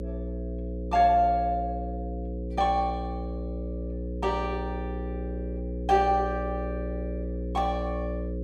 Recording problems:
hum; 60 Hz, harmonics up to 540 Hz, SNR 6 dB

